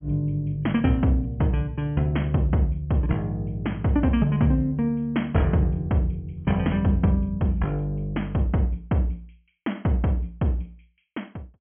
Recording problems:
low-pass filter; nothing above 3.3 kHz

